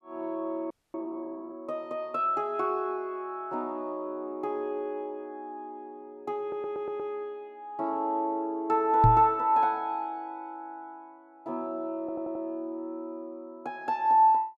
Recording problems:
audio freezing; at 0.5 s
stutter; at 6.5 s and at 12 s
microphone thump; at 9 s; peak +9 dB vs average level

